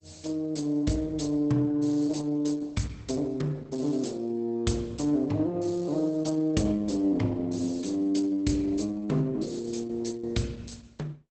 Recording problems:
lossy codec; Opus, log-spectral distance 4 dB, nothing above 8.2 kHz

